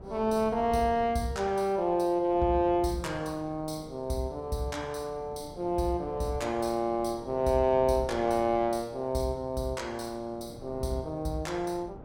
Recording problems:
wind noise; below 420 Hz, SNR 19 dB

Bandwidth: 16.5 kHz